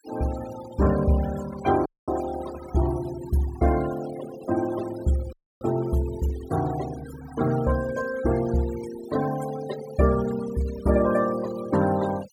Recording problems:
denoising artefacts; signal-to-artefact ratio 15 dB
audio cutting out; at 2 s and at 5.5 s

